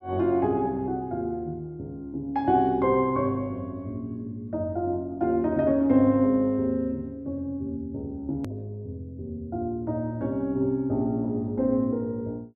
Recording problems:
edit click; at 8.5 s

